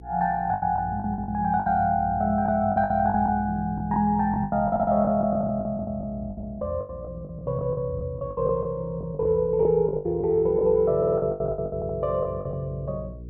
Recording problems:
electrical hum; 60 Hz, harmonics up to 480 Hz, SNR 17 dB
packet loss; 15% of the sound replaced, filled with the last packet
audio stuttering; at 4.5 s, at 11 s and at 12 s

